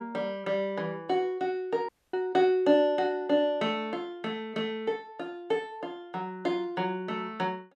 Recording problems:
dropout; at 2 s

